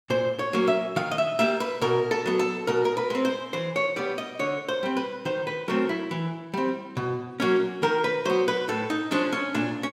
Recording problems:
none

